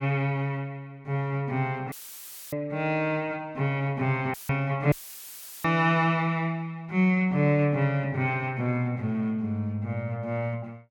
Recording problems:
dropout; at 2 s for 0.5 s, at 4.5 s and at 5 s for 0.5 s; filled with static

